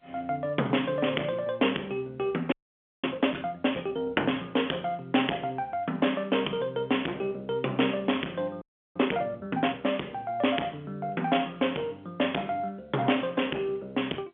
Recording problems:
phone line; 220 Hz to 3.4 kHz, G.711
distorted audio; hard clipping, uneven, signal-to-distortion ratio 12 dB
frozen audio; at 2.5 s for 0.5 s and at 8.5 s

